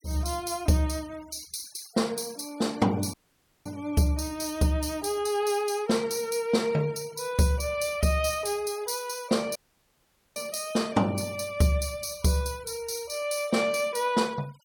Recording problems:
denoising artefacts; signal-to-artefact ratio 23 dB
dropout; at 3 s for 0.5 s and at 9.5 s for 1 s

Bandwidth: 18 kHz